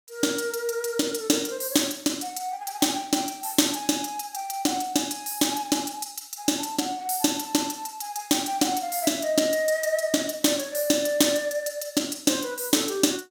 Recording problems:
none

